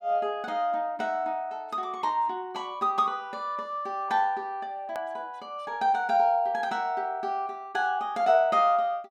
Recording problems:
click at an edit; at 5 s

